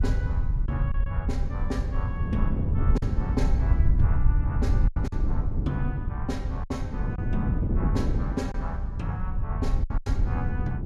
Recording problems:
low-frequency rumble; below 84 Hz, SNR -7 dB
wind on the microphone; below 230 Hz, SNR -1 dB
lost packets; 4% of the sound replaced, filled with silence

